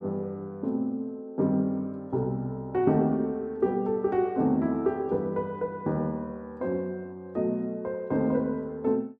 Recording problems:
none

